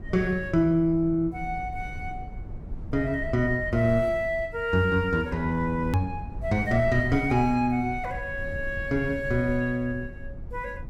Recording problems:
rumble; below 98 Hz, SNR 13 dB
edit click; at 6 s

